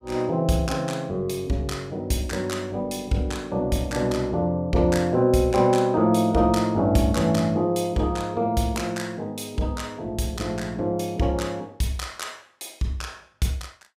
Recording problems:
none

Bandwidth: 15.5 kHz